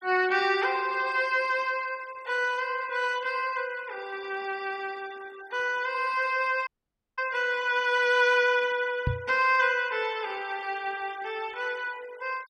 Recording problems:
noise reduction artefacts; signal-to-artefact ratio 23 dB
dropout; at 6.5 s for 0.5 s
microphone thump; at 9 s; peak +3 dB vs average level

